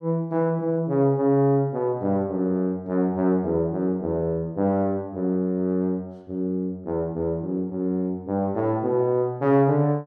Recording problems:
none

